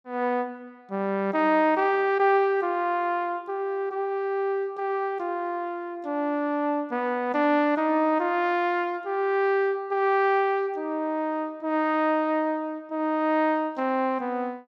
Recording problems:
none

